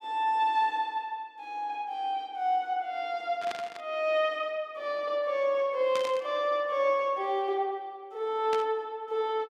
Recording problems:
burst of static; at 3.5 s, at 6 s and at 8.5 s; peak -4 dB vs average level

